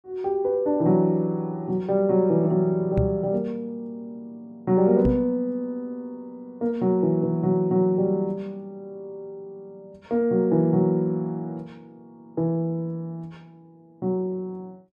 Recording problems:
microphone thump; at 3 s and at 5 s; peak +3 dB vs average level

